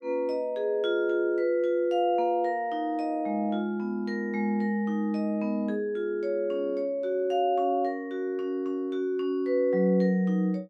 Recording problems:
none

